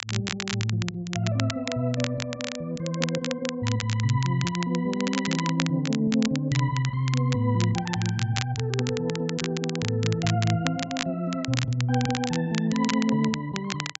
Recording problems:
treble missing; nothing above 8 kHz
crackling; vinyl, SNR 8 dB

